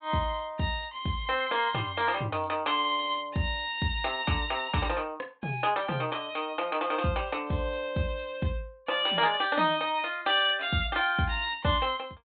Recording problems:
treble cut off; nothing above 4 kHz

